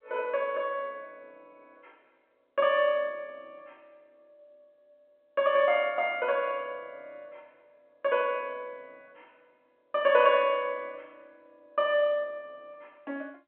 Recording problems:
phone line; 260 Hz to 3.4 kHz, G.711

